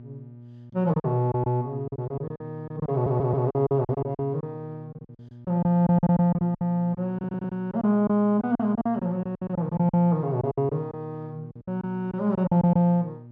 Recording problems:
hum; 60 Hz, harmonics up to 600 Hz, SNR 19 dB
packet loss; 14% of the sound replaced, filled with silence
stutter; at 3 s and at 7 s

